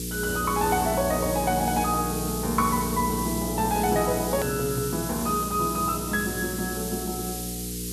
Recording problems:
electrical hum; 60 Hz, harmonics up to 480 Hz, SNR 7 dB
background hiss; slope +8 dB per octave, SNR 6 dB
edit click; at 4.5 s

